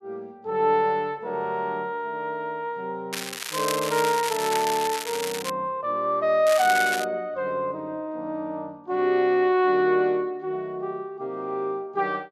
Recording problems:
crackle; from 3 to 5.5 s and at 6.5 s; loose cable, SNR 6 dB

